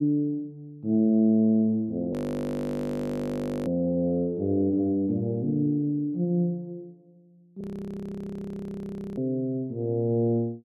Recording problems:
frozen audio; at 2 s for 1.5 s and at 7.5 s for 1.5 s

